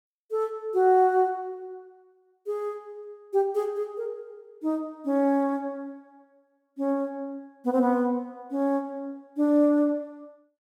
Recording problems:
none

